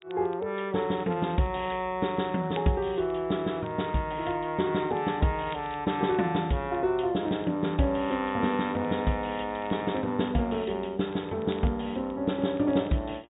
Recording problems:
treble missing; nothing above 4 kHz
crackling; vinyl, SNR 27 dB

